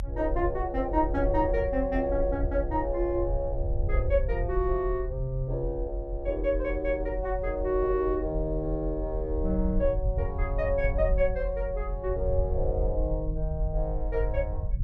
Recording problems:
rumble; below 64 Hz, SNR 3 dB

